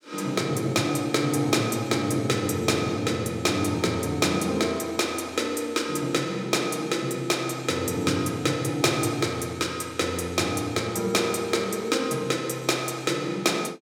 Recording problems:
none

